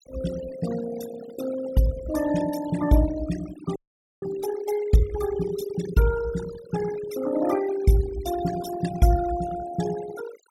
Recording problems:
noise reduction artefacts; signal-to-artefact ratio 12 dB
audio freezing; at 4 s

